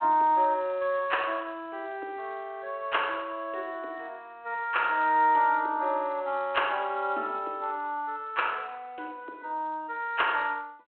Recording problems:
telephone audio; 280 Hz to 3.5 kHz, G.726

